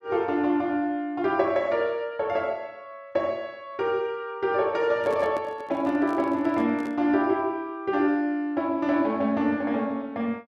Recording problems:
handling noise; from 5 to 7 s; peak -6 dB vs average level

